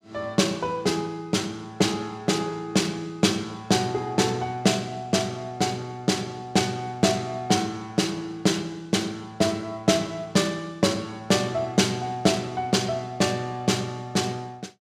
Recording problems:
none

